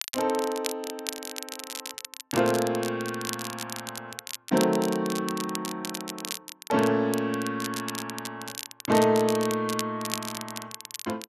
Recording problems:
crackling; vinyl, SNR 9 dB

